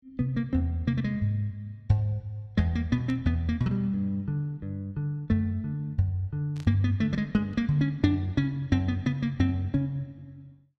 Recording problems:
burst of static; at 3 s and at 6.5 s; peak -15 dB vs average level

